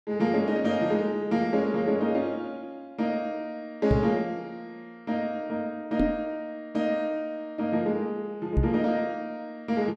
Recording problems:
microphone bump; at 4 s, at 6 s and at 8.5 s; peak +7 dB vs average level

